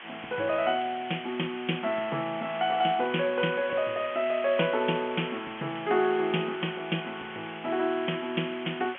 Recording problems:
phone line; 190 Hz to 3.3 kHz, G.711
hiss; SNR 12 dB

